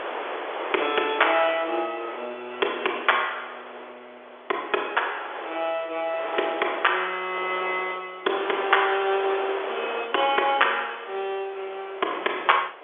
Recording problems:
telephone audio; 320 Hz to 3.5 kHz, G.711
wind noise; below 1.7 kHz, SNR 11 dB

